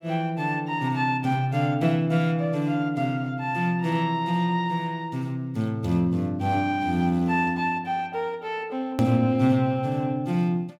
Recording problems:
edit click; at 9 s

